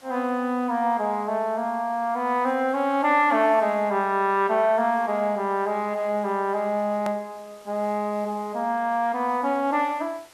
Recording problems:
hiss; slope -2 dB per octave, SNR 28 dB
edit click; at 7 s

